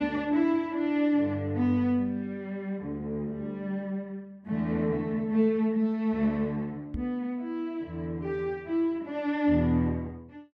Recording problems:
knock on the microphone; at 7 s; peak -2 dB vs average level

